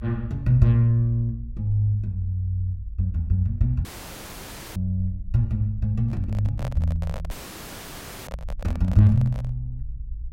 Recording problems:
low-frequency rumble; below 56 Hz, SNR 13 dB
audio cutting out; at 4 s for 1 s and at 7.5 s for 1 s
handling noise; from 6 to 9.5 s; peak -7 dB vs average level

